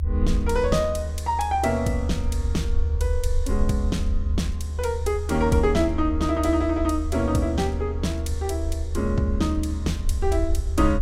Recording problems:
low-frequency rumble; below 76 Hz, SNR 2 dB

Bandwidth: 16 kHz